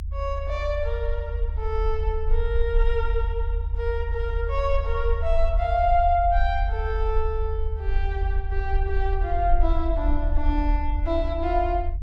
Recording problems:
low-frequency rumble; below 66 Hz, SNR 0 dB

